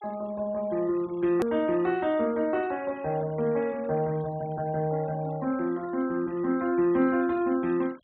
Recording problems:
treble cut off; nothing above 4 kHz
denoising artefacts; signal-to-artefact ratio 25 dB
click at an edit; at 1.5 s

